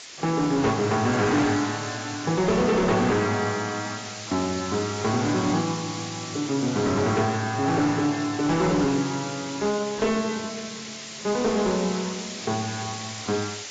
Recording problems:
lossy compression; AAC, log-spectral distance 16 dB, nothing above 7.3 kHz
distortion; hard clipping, signal-to-distortion ratio 10 dB
hiss; slope +1 dB per octave, SNR 10 dB

